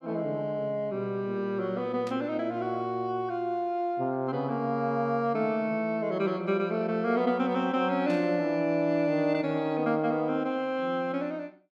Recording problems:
static burst; at 2 s and at 8 s; peak -12 dB vs average level

